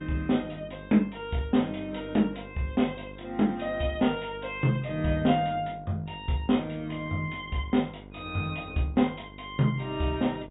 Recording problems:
treble cut off; nothing above 4 kHz
hum; 50 Hz, harmonics up to 1.1 kHz, SNR 18 dB

